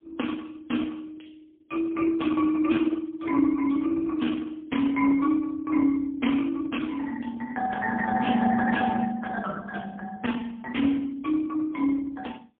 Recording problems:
phone line; 240 Hz to 3 kHz, AMR-NB, then MP3

